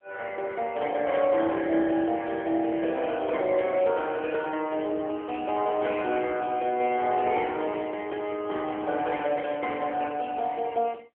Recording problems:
telephone audio; 280 Hz to 3.3 kHz, AMR-NB

